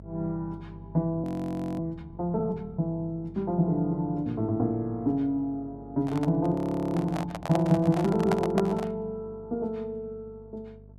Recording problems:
hum; 50 Hz, harmonics up to 650 Hz, SNR 20 dB
frozen audio; at 1 s for 0.5 s and at 6.5 s
microphone handling noise; from 6 to 9 s; peak +3 dB vs average level

